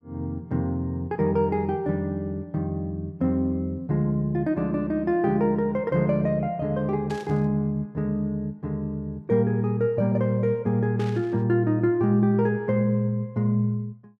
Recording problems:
static burst; at 7 s and at 11 s; peak -13 dB vs average level

